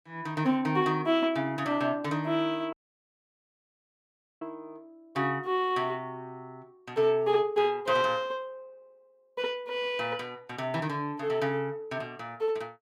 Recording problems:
audio cutting out; at 2.5 s for 1.5 s

